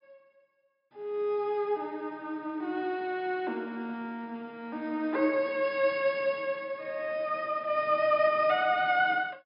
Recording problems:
treble cut off; nothing above 5.5 kHz

